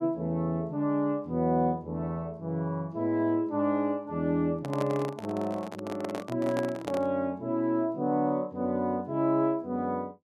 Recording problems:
microphone handling noise; from 4.5 to 7 s; peak -1 dB vs average level

